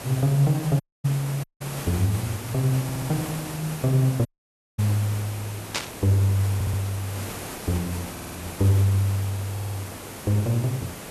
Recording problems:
background hiss; slope -4 dB per octave, SNR 10 dB
audio cutting out; at 1 s, at 1.5 s and at 4.5 s for 0.5 s
audio stuttering; 4 times, first at 3 s
static burst; at 5.5 s; peak +3 dB vs average level

